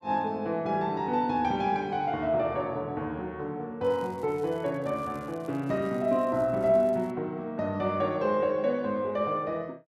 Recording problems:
crackling; at 4 s and from 5 to 7 s; loose cable, SNR 30 dB

